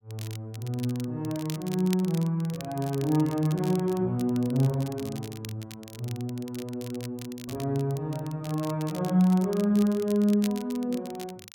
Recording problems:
crackle; vinyl, SNR 17 dB

